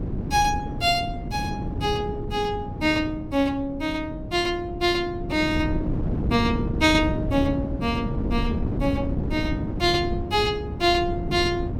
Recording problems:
wind on the microphone; below 260 Hz, SNR 5 dB

